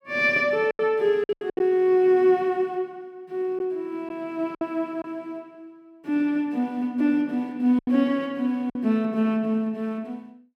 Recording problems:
packet loss; 5% of the sound replaced, filled with silence

